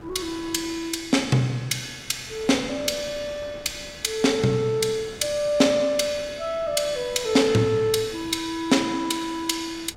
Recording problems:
wind on the microphone; below 700 Hz, SNR 22 dB

